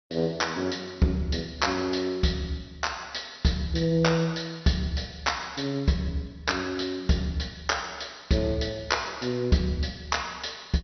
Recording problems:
codec artefacts; MP2, log-spectral distance 9 dB, nothing above 6 kHz

